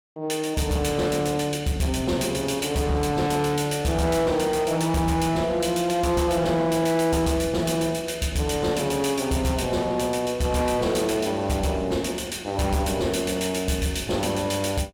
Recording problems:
distorted audio; hard clipping, signal-to-distortion ratio 12 dB

